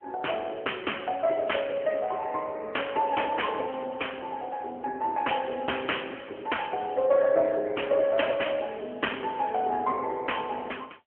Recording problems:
telephone audio; 280 Hz to 3.2 kHz, AMR-NB

